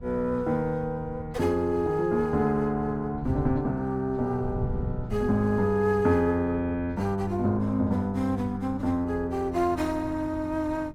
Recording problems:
wind on the microphone; below 150 Hz, SNR 14 dB

